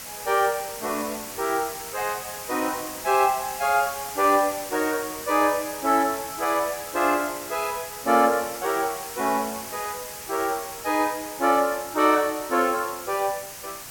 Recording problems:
hiss; slope 0 dB per octave, SNR 10 dB

